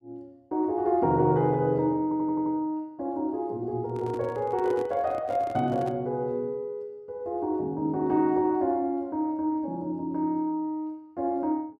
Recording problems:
stutter; at 2 s
handling noise; from 4 to 6 s; peak -7 dB vs average level

